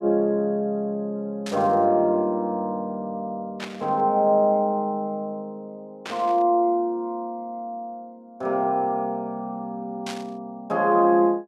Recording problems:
burst of static; 4 times, first at 1.5 s; peak -5 dB vs average level

